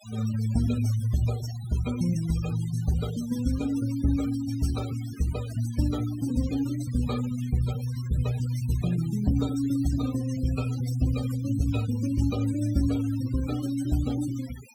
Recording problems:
noise reduction artefacts; signal-to-artefact ratio 16 dB

